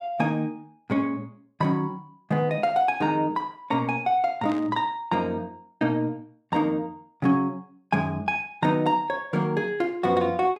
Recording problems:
burst of static; at 4.5 s; peak -12 dB vs average level

